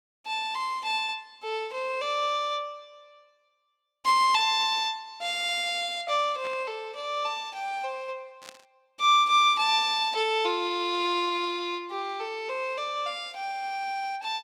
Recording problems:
burst of static; at 6.5 s and at 8.5 s; peak -12 dB vs average level

